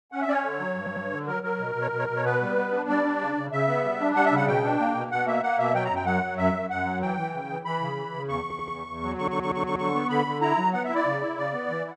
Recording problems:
stutter; 4 times, first at 1 s

